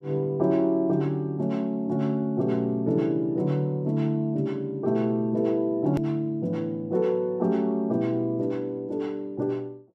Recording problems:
click at an edit; at 6 s

